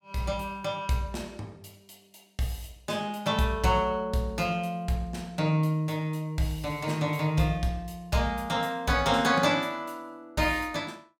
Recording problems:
none

